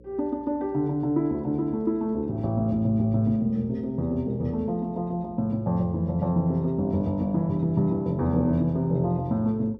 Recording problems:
hum; 60 Hz, harmonics up to 540 Hz, SNR 24 dB

